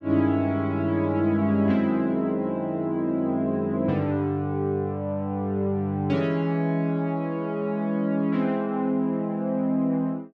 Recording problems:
none

